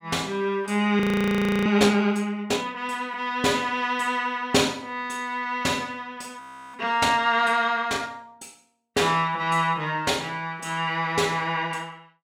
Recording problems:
frozen audio; at 1 s for 0.5 s and at 6.5 s

